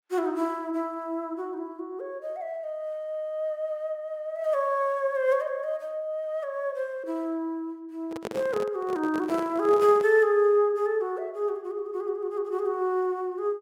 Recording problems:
microphone handling noise; from 8 to 10 s; peak -2 dB vs average level

